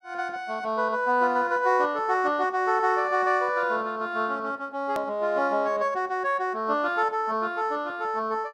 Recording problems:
click at an edit; at 5 s

